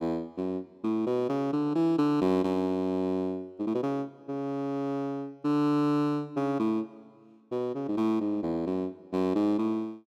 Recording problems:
none

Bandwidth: 14 kHz